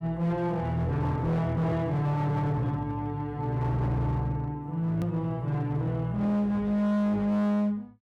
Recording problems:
distortion; hard clipping, signal-to-distortion ratio 7 dB
edit click; at 5 s

